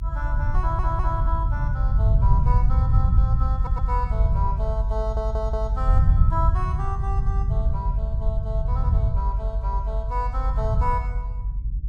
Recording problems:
rumble; below 88 Hz, SNR -8 dB
audio stuttering; at 0.5 s, at 3.5 s and at 5 s

